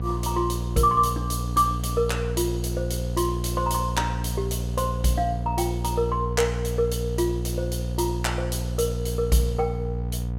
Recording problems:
hum; 60 Hz, harmonics up to 720 Hz, SNR 3 dB

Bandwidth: 16 kHz